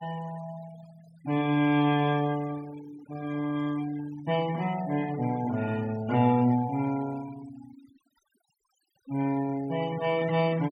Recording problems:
denoising artefacts; signal-to-artefact ratio 19 dB

